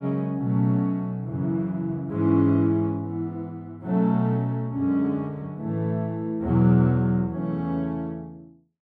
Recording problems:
none

